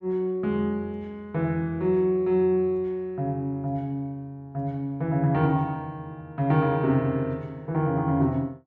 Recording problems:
none

